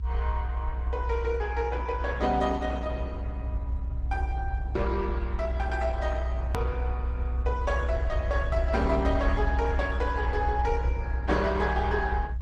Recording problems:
lossy compression; Opus, log-spectral distance 2 dB, nothing above 11.6 kHz
rumble; below 64 Hz, strongest tone 62 Hz, SNR -1 dB
hard cut with a click; at 6.5 s

